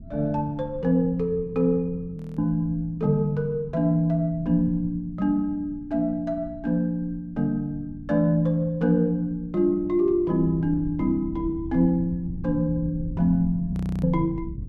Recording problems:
low-frequency rumble; below 150 Hz, SNR 15 dB
audio freezing; at 2 s and at 14 s

